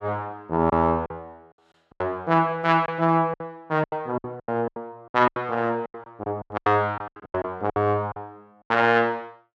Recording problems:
lost packets; 16% of the sound replaced, filled with silence

